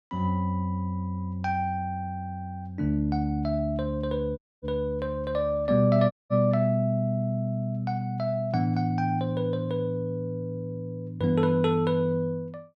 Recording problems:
dropout; at 4.5 s and at 6 s

